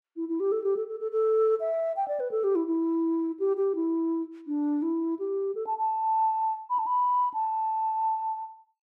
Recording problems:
none

